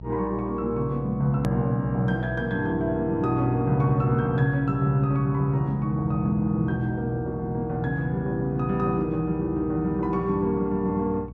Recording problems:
electrical hum; 60 Hz, harmonics up to 480 Hz, SNR 15 dB
click at an edit; at 1.5 s

